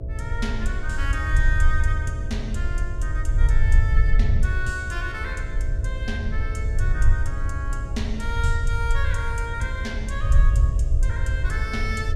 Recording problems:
hum; 60 Hz, harmonics up to 660 Hz, SNR 11 dB
low-frequency rumble; below 70 Hz, SNR -6 dB
wind noise; below 360 Hz, SNR 19 dB

